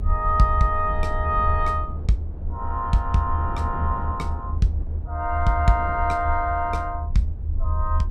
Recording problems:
low-frequency rumble; below 80 Hz, SNR 4 dB
wind on the microphone; below 320 Hz, SNR 16 dB

